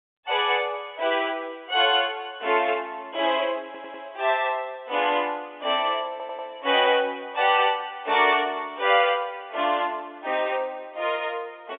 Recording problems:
telephone audio; 300 Hz to 3.6 kHz, G.711
audio stuttering; at 3.5 s and at 6 s

